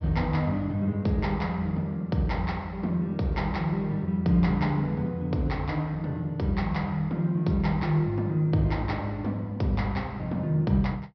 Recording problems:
treble cut off; nothing above 5.5 kHz

